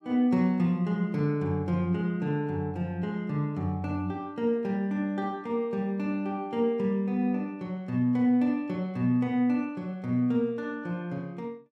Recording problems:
none

